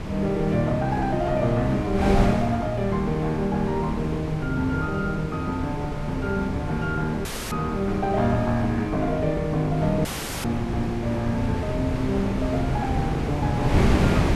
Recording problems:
wind noise; below 380 Hz, SNR 4 dB
audio cutting out; at 7.5 s and at 10 s

